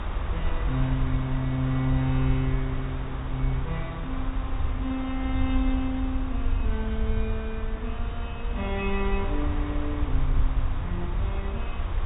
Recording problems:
treble cut off; nothing above 4 kHz
background hiss; SNR 8 dB
low-frequency rumble; below 68 Hz, SNR 0 dB

